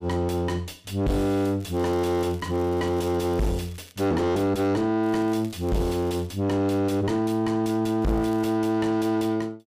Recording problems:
distortion; soft clipping, signal-to-distortion ratio 7 dB
crackle; from 1.5 to 4 s, from 5 to 6.5 s and at 8 s; loose cable, SNR 26 dB

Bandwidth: 15 kHz